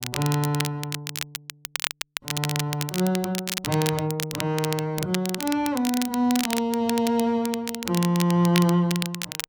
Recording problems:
crackling; vinyl, SNR 7 dB

